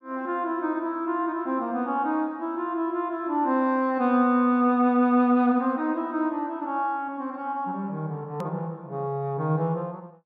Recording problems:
click at an edit; at 8.5 s

